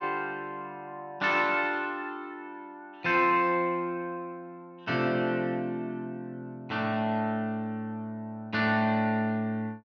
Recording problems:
none

